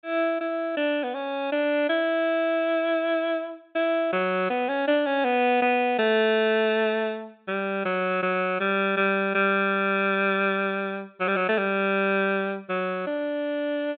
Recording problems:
treble cut off; nothing above 4 kHz

